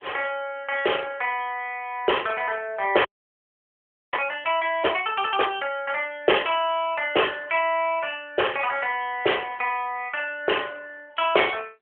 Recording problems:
telephone audio; 340 Hz to 3.3 kHz, AMR-NB
frozen audio; at 3 s for 1 s

